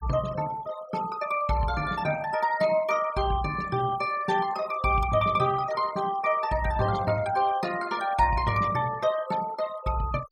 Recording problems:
denoising artefacts; signal-to-artefact ratio 16 dB

